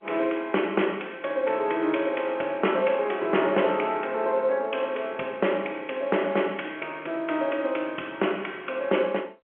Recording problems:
phone line; 300 Hz to 3.2 kHz, G.711

